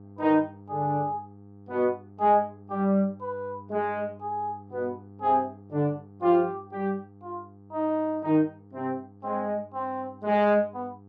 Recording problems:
hum; 50 Hz, harmonics up to 900 Hz, SNR 22 dB

